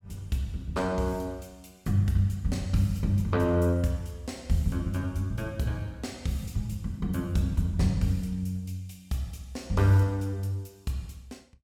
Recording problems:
none

